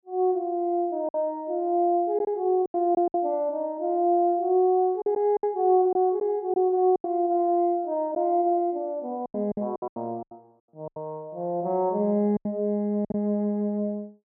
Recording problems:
packet loss; 8% of the sound replaced, filled with silence

